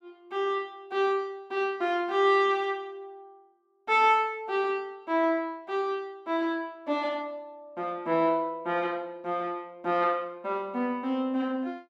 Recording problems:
none

